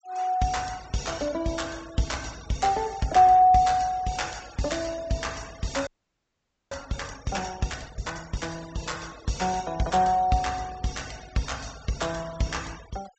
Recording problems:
treble cut off; nothing above 7.8 kHz
noise reduction artefacts; signal-to-artefact ratio 21 dB
frozen audio; at 6 s for 1 s

